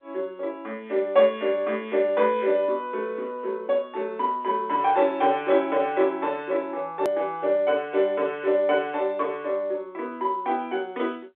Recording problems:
phone line; 240 Hz to 3.6 kHz, G.711
click at an edit; at 7 s

